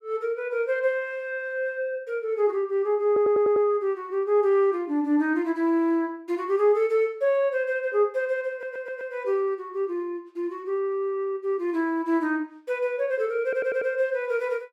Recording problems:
audio stuttering; at 3 s, at 8.5 s and at 13 s

